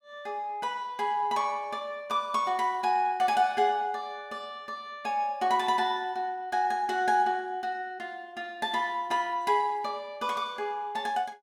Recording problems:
none

